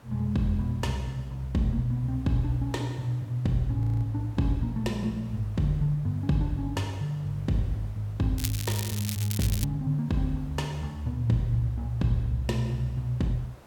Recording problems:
background hiss; SNR 25 dB
frozen audio; at 4 s
crackling; from 8.5 to 9.5 s; loose cable, SNR 7 dB

